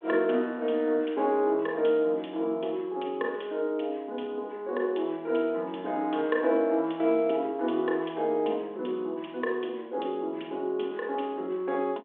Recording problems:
telephone audio; 240 Hz to 3.6 kHz, G.726

